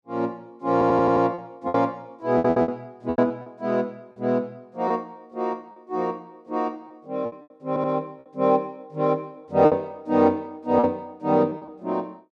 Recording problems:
lost packets; 6% of the sound replaced, filled with repeated pitch periods
audio stuttering; at 0.5 s, at 2.5 s and at 7.5 s

